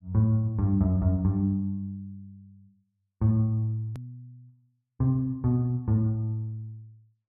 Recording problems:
edit click; at 4 s

